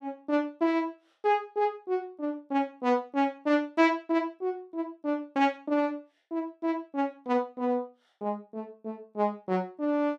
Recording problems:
none

